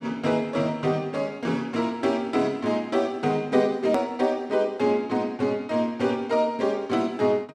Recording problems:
edit click; at 4 s

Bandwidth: 12.5 kHz